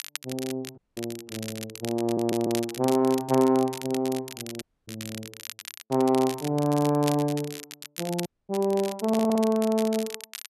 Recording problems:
crackling; vinyl, SNR 13 dB
dropout; at 1 s, at 4.5 s and at 8.5 s
audio stuttering; at 2 s and at 9 s

